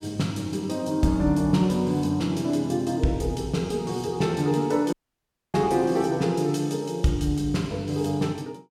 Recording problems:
dropout; at 5 s for 0.5 s

